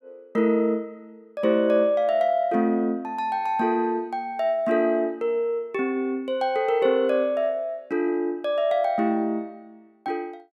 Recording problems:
none

